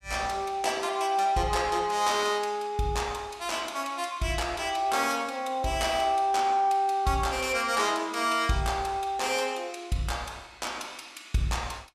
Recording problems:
none

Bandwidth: 14.5 kHz